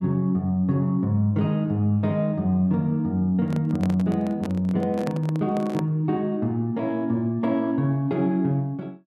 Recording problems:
microphone handling noise; from 3.5 to 6 s; peak -5 dB vs average level

